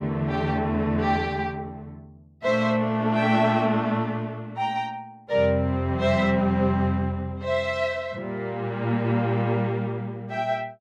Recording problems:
none

